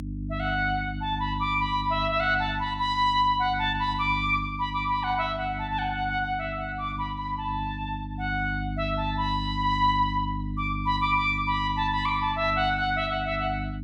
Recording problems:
electrical hum; 50 Hz, harmonics up to 300 Hz, SNR 8 dB

